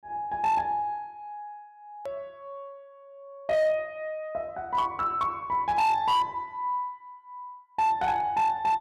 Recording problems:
distorted audio; hard clipping, signal-to-distortion ratio 12 dB
hard cut with a click; at 2 s

